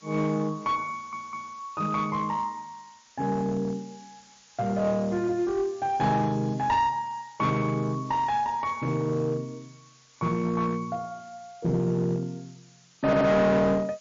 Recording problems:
codec artefacts; MP3, log-spectral distance 10 dB, nothing above 6.7 kHz
distortion; hard clipping, uneven, signal-to-distortion ratio 9 dB
background hiss; slope +2 dB per octave, SNR 27 dB
stutter; at 1 s and at 13 s

